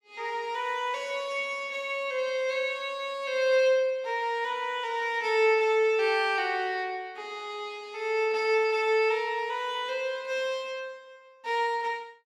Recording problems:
none

